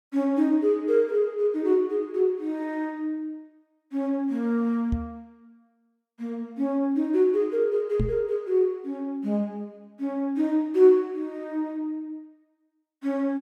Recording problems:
microphone thump; at 5 s and at 8 s; peak +2 dB vs average level

